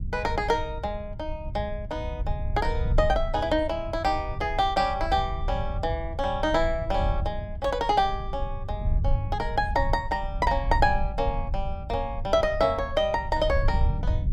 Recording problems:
rumble; below 82 Hz, SNR 5 dB

